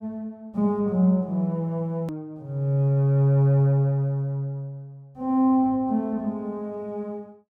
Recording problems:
hard cut with a click; at 2 s

